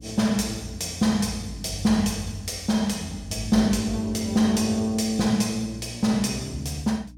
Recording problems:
electrical hum; 60 Hz, harmonics up to 300 Hz, SNR 22 dB

